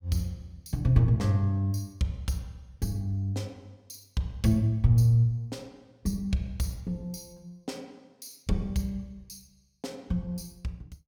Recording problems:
none

